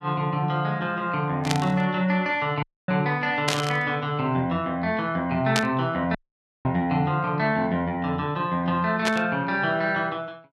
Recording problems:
burst of static; 4 times, first at 1.5 s; peak +5 dB vs average level
dropout; at 2.5 s and at 6 s for 0.5 s

